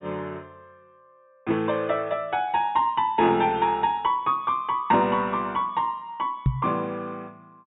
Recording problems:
low-pass filter; nothing above 4 kHz
microphone bump; at 6.5 s; peak +6 dB vs average level

